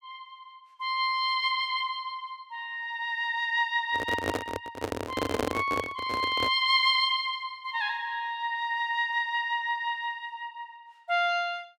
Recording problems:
handling noise; from 4 to 6.5 s; peak +2 dB vs average level

